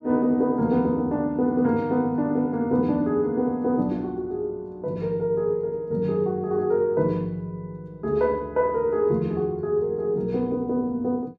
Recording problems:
none

